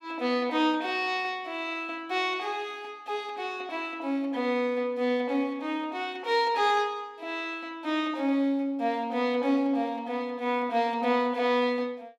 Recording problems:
none

